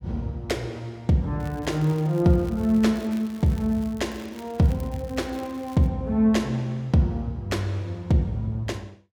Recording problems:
crackle; from 1.5 to 4 s and from 4 to 6 s; loose cable, SNR 25 dB

